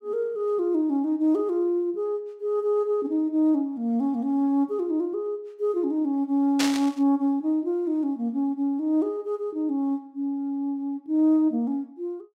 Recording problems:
static burst; at 6.5 s; peak +3 dB vs average level

